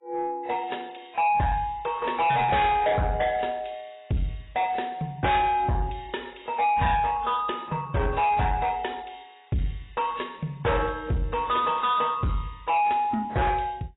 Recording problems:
lossy codec; AAC, log-spectral distance 4 dB, nothing above 3.8 kHz
distortion; soft clipping, signal-to-distortion ratio 7 dB

